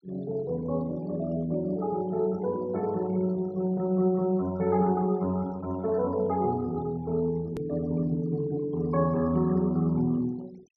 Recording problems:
treble missing; nothing above 6.3 kHz
denoising artefacts; signal-to-artefact ratio 24 dB
hard cut with a click; at 7.5 s

